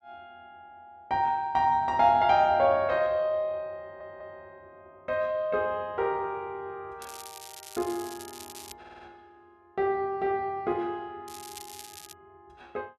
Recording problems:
audio stuttering; at 4 s and at 9 s
crackling; from 7 to 8.5 s and at 11 s; loose cable, SNR 17 dB

